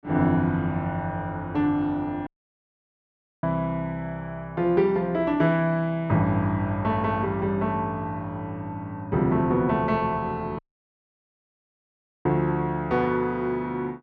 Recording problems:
audio cutting out; at 2.5 s for 1 s and at 11 s for 1.5 s

